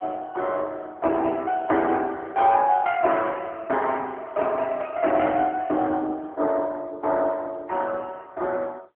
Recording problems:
telephone audio; 280 Hz to 3.2 kHz, AMR-NB

